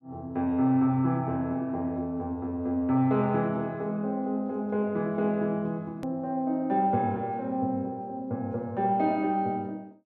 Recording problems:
edit click; at 6 s

